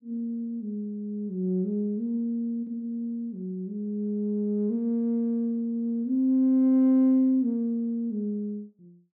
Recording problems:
none

